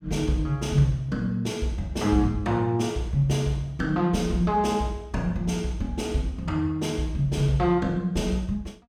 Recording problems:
none

